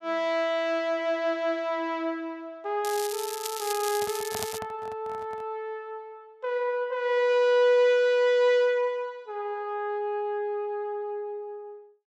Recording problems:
crackling; from 3 to 4.5 s; loose cable, SNR 8 dB
microphone handling noise; from 4 to 5.5 s; peak -7 dB vs average level

